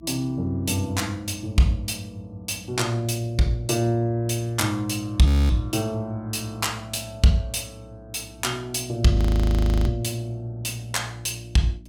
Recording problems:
hum; 60 Hz, harmonics up to 300 Hz, SNR 24 dB
frozen audio; at 5.5 s and at 9 s for 0.5 s

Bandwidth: 17 kHz